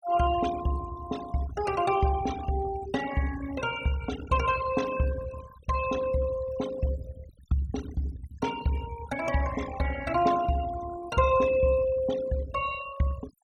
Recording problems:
denoising artefacts; signal-to-artefact ratio 14 dB

